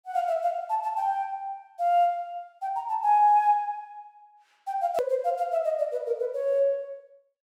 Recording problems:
edit click; at 5 s

